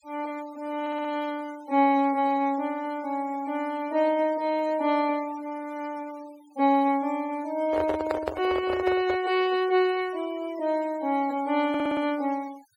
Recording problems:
noise reduction artefacts; signal-to-artefact ratio 21 dB
audio stuttering; at 1 s and at 12 s
microphone handling noise; from 7.5 to 9 s; peak +1 dB vs average level

